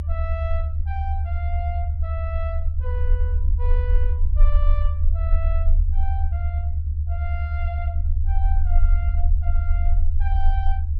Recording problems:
low-frequency rumble; below 76 Hz, SNR -13 dB

